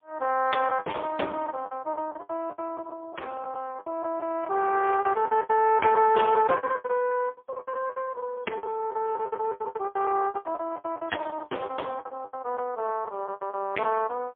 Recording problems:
telephone audio; 300 Hz to 2.9 kHz, AMR-NB, then MP3
lost packets; 19% of the sound replaced, filled with the last packet

